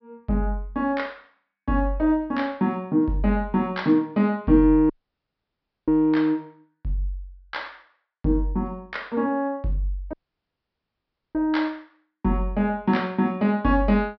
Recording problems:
treble missing; nothing above 5.5 kHz
audio cutting out; at 5 s for 1 s and at 10 s for 1 s

